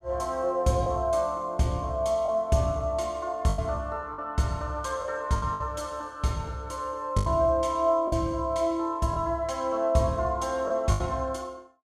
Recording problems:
lost packets; 4% of the sound replaced, filled with the last packet

